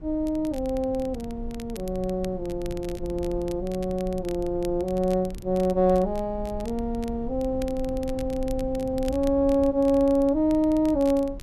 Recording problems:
low-frequency rumble; below 90 Hz, SNR 14 dB
crackle; vinyl, SNR 23 dB

